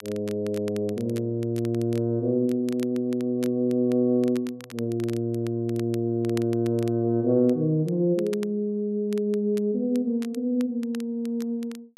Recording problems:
crackle; vinyl, SNR 22 dB

